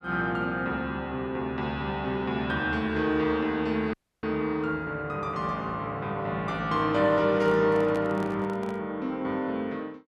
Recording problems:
audio cutting out; at 4 s
microphone handling noise; from 7.5 to 9 s; peak -6 dB vs average level

